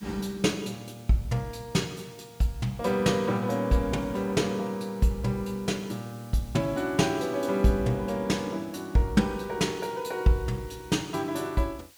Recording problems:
hiss; slope +1 dB per octave, SNR 25 dB

